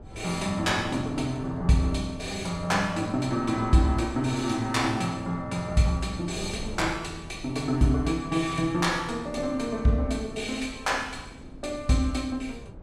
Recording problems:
wind on the microphone; below 230 Hz, SNR 18 dB

